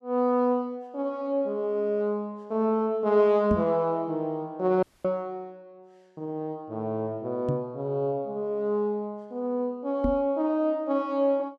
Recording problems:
microphone bump; at 3.5 s, at 7.5 s and at 10 s; peak +3 dB vs average level
audio cutting out; at 5 s

